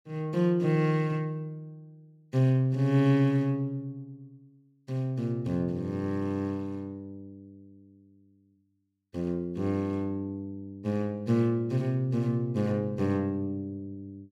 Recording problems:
none

